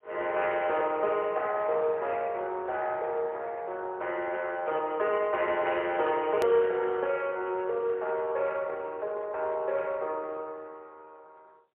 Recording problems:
phone line; 370 Hz to 3.4 kHz, AMR-NB, then MP3
edit click; at 6.5 s

